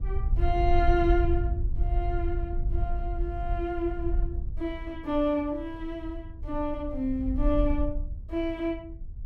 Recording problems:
wind noise; below 62 Hz, SNR 1 dB

